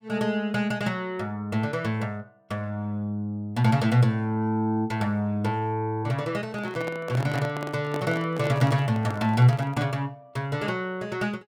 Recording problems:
handling noise; from 6.5 to 10 s; peak -4 dB vs average level

